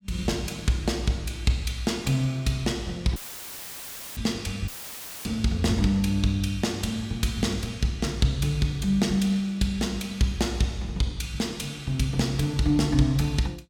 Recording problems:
dropout; at 3 s for 1 s and at 4.5 s for 0.5 s; filled with static

